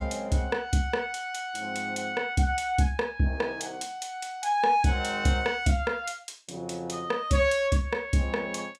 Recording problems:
none

